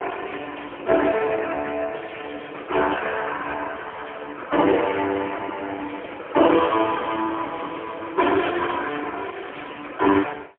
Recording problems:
telephone audio; 260 Hz to 3.2 kHz, AMR-NB, then MP3

